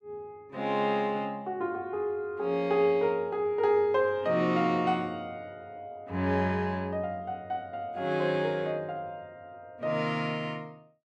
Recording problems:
none

